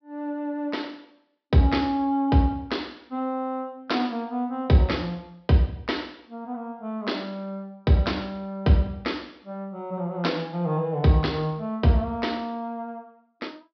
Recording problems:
treble missing; nothing above 5.5 kHz

